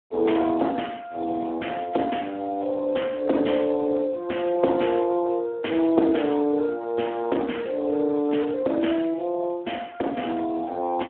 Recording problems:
phone line; 190 Hz to 3.3 kHz, Speex

